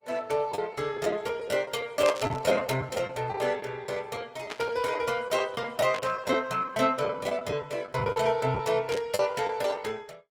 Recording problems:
lossy codec; Opus, log-spectral distance 3 dB, nothing above 19 kHz
packet loss; 10% of the sound replaced, filled with the last packet
static burst; 4 times, first at 2 s; peak -2 dB vs average level

